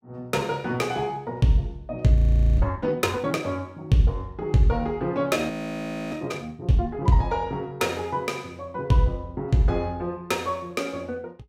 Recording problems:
audio freezing; at 2 s and at 5.5 s for 0.5 s

